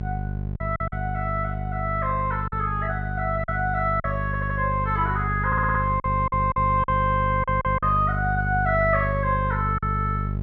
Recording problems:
hum; 50 Hz, harmonics up to 600 Hz, SNR 4 dB
lost packets; 5% of the sound replaced, filled with silence
stutter; at 4.5 s, at 5.5 s and at 7.5 s

